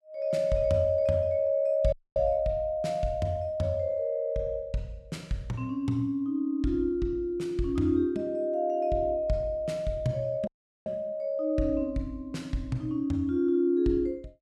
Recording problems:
dropout; at 2 s and at 10 s

